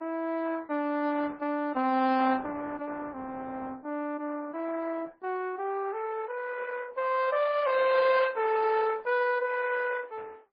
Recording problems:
lossy codec; Opus, then MP3, log-spectral distance 3 dB, nothing above 4.2 kHz

